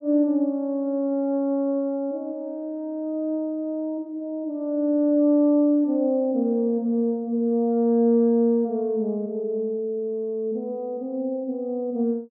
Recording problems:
none

